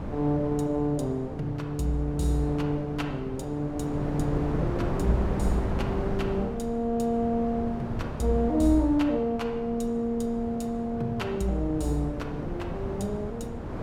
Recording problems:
wind on the microphone; below 420 Hz, SNR 6 dB

